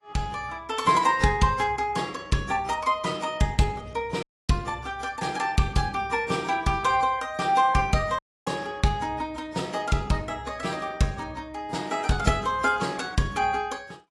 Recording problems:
codec artefacts; AAC, log-spectral distance 3 dB, nothing above 11 kHz
audio cutting out; at 4 s and at 8 s

